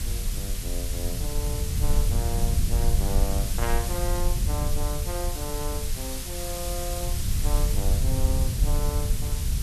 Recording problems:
hiss; slope +2 dB per octave, SNR -1 dB
low-frequency rumble; below 78 Hz, SNR -7 dB

